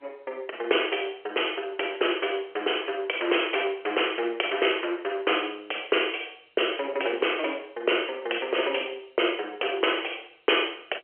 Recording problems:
phone line; 320 Hz to 3.2 kHz, G.711

